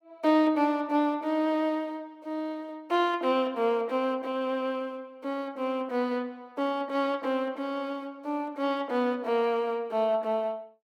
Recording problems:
none

